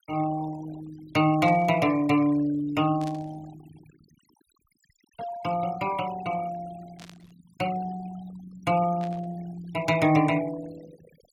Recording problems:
denoising artefacts; signal-to-artefact ratio 19 dB
static burst; 4 times, first at 1.5 s; peak -14 dB vs average level

